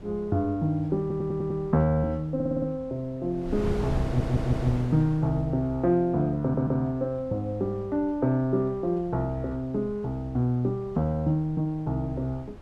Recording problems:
wind on the microphone; below 260 Hz, SNR 13 dB
audio stuttering; 4 times, first at 1 s

